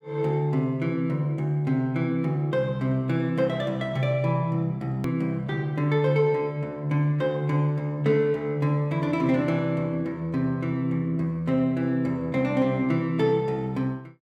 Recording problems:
click at an edit; at 5 s

